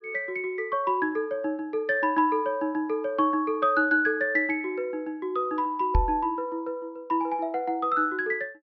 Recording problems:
treble cut off; nothing above 5.9 kHz
knock on the microphone; at 6 s; peak +6 dB vs average level

